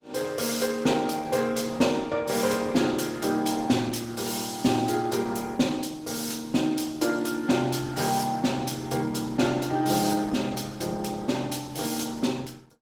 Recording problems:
lossy compression; Opus, log-spectral distance 5 dB

